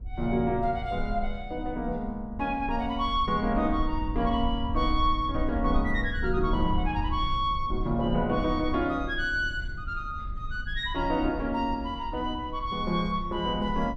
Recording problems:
rumble; below 62 Hz, SNR 8 dB

